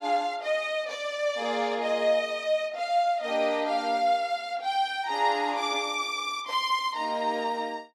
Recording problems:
none

